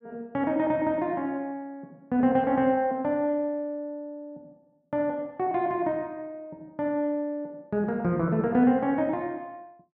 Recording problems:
none

